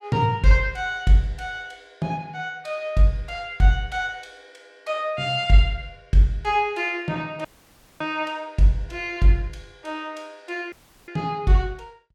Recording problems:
audio cutting out; at 7.5 s for 0.5 s and at 11 s

